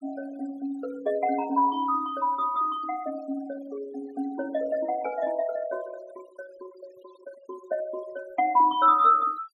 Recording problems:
noise reduction artefacts; signal-to-artefact ratio 22 dB

